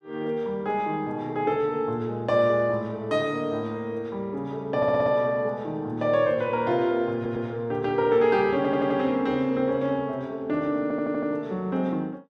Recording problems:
stutter; 4 times, first at 5 s

